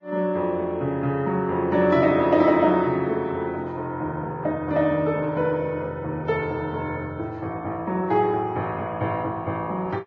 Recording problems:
codec artefacts; Vorbis, log-spectral distance 2 dB

